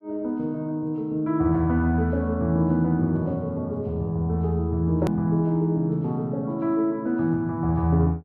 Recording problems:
click at an edit; at 5 s

